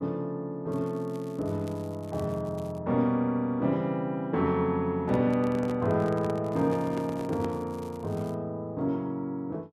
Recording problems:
crackling; from 0.5 to 3 s and from 6.5 to 8.5 s; loose cable, SNR 27 dB
handling noise; from 5 to 7.5 s; peak -4 dB vs average level

